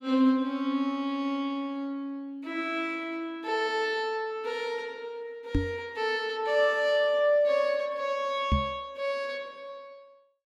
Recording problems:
microphone bump; at 5.5 s and at 8.5 s; peak +6 dB vs average level

